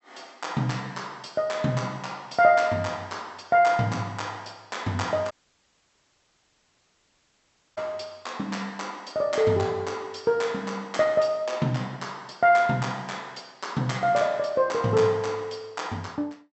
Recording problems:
treble missing; nothing above 8 kHz
dropout; at 5.5 s for 2.5 s

